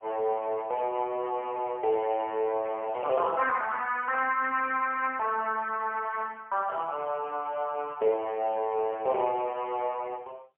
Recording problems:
telephone audio; 340 Hz to 3.1 kHz, AMR-NB, then MP3

